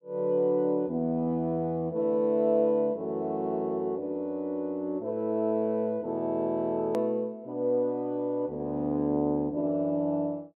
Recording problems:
click at an edit; at 7 s

